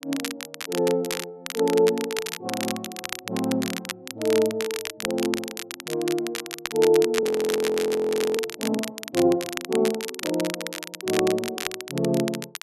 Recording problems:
crackling; vinyl, SNR 7 dB
frozen audio; at 7 s for 1 s

